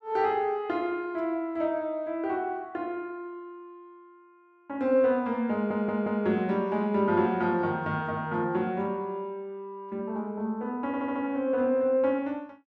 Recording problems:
audio stuttering; at 5.5 s and at 11 s

